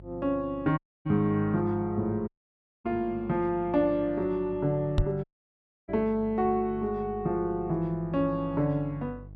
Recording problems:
hum; 50 Hz, harmonics up to 650 Hz, SNR 18 dB
dropout; at 1 s, at 2.5 s for 0.5 s and at 5 s for 0.5 s
microphone bump; at 5 s; peak +6 dB vs average level

